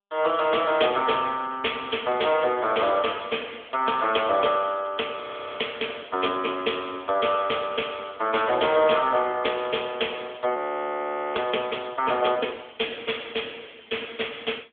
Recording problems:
phone line; 300 Hz to 3.4 kHz, AMR-NB
frozen audio; at 5 s and at 11 s for 1 s

